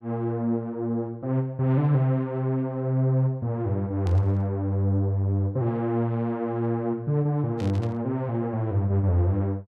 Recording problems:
burst of static; at 4 s and at 7.5 s; peak -13 dB vs average level

